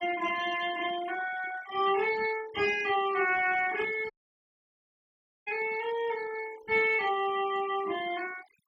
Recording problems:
denoising artefacts; signal-to-artefact ratio 17 dB
dropout; at 4 s for 1.5 s

